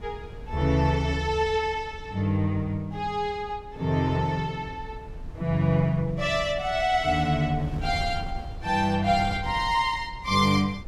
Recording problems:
wind on the microphone; below 120 Hz, SNR 15 dB

